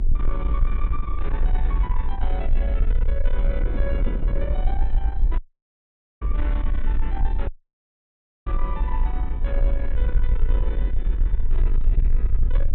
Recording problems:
low-pass filter; nothing above 4 kHz
distortion; soft clipping, signal-to-distortion ratio 11 dB
low-frequency rumble; below 50 Hz, strongest tone 20 Hz, SNR -11 dB
wind noise; below 310 Hz, SNR 1 dB
dropout; at 5.5 s for 1 s and at 7.5 s for 1 s

